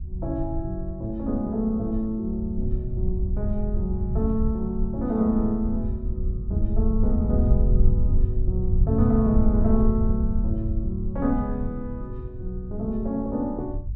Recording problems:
rumble; below 82 Hz, SNR 1 dB

